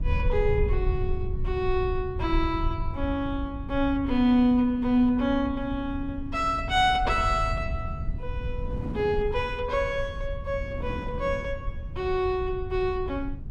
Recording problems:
low-frequency rumble; below 84 Hz, SNR 8 dB
wind noise; below 260 Hz, SNR 17 dB

